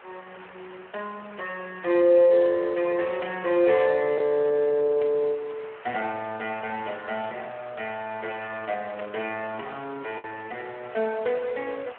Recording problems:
telephone audio; 280 Hz to 2.9 kHz, Speex
background hiss; SNR 20 dB
lost packets; 0.7% of the sound replaced, filled with the last packet
static burst; at 5 s and at 9 s; peak -11 dB vs average level

